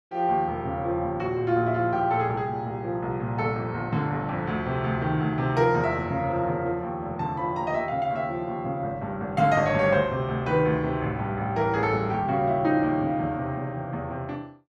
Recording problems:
none

